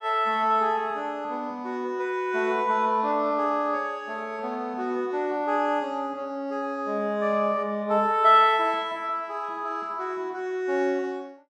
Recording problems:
none

